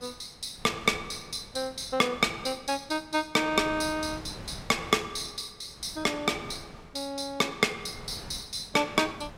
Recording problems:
wind noise; below 960 Hz, SNR 18 dB

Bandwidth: 16 kHz